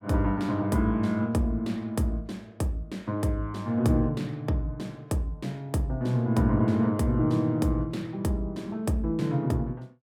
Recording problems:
none

